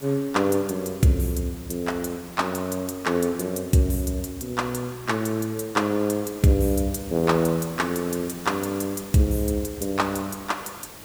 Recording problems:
hiss; slope -3 dB per octave, SNR 17 dB

